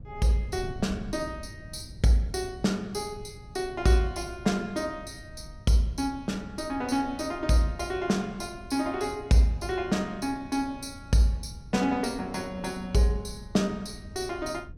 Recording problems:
wind noise; below 140 Hz, SNR 17 dB

